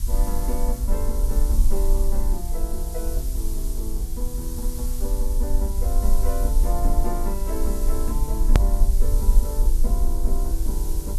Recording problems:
mains hum; 60 Hz, harmonics up to 600 Hz, SNR 21 dB
background hiss; SNR 5 dB
low-frequency rumble; below 44 Hz, SNR -8 dB
edit click; at 8.5 s

